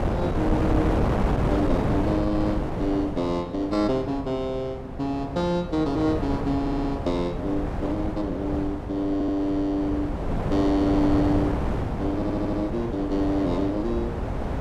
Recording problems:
wind on the microphone; below 530 Hz, SNR 2 dB
stutter; at 6.5 s, at 9 s and at 12 s

